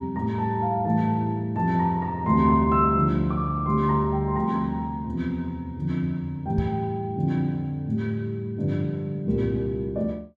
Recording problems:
microphone thump; at 6.5 s; peak +3 dB vs average level

